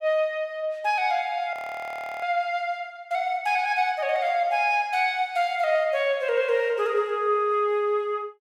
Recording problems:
frozen audio; at 1.5 s for 0.5 s

